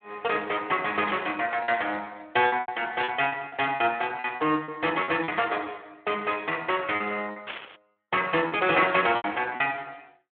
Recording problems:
telephone audio; 240 Hz to 3.4 kHz, Speex
lost packets; 8% of the sound replaced, filled with repeated pitch periods
static burst; at 1 s, at 3 s and at 7.5 s; peak -1 dB vs average level

